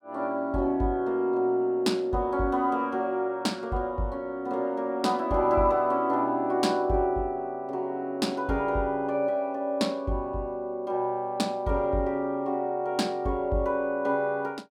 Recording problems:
none

